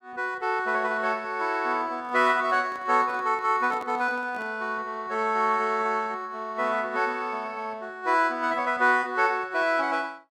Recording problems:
handling noise; from 2 to 4.5 s; peak -12 dB vs average level

